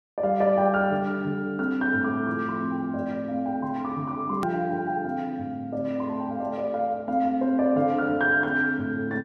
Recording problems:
hard cut with a click; at 4.5 s

